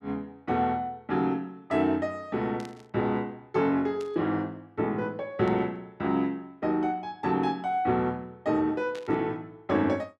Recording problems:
burst of static; 4 times, first at 2.5 s; peak -11 dB vs average level

